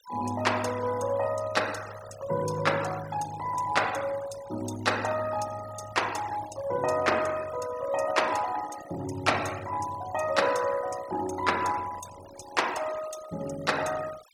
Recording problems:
denoising artefacts; signal-to-artefact ratio 15 dB

